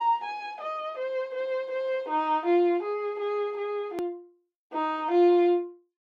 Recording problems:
edit click; at 4 s

